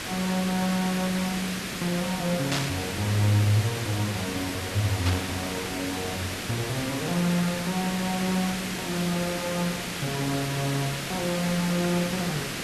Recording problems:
hum; 60 Hz, harmonics up to 960 Hz, SNR 21 dB
hiss; SNR 3 dB
burst of static; at 2.5 s and at 5 s; peak +3 dB vs average level

